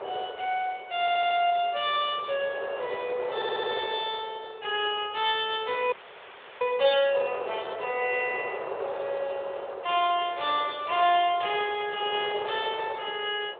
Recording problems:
telephone audio; 370 Hz to 3.7 kHz, Speex
wind on the microphone; below 880 Hz, SNR 10 dB
stutter; at 1 s and at 3.5 s
frozen audio; at 6 s for 0.5 s

